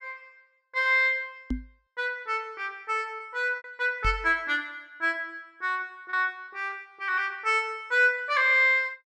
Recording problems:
lost packets; 3% of the sound replaced, filled with repeated pitch periods
knock on the microphone; at 1.5 s and at 4 s; peak 0 dB vs average level

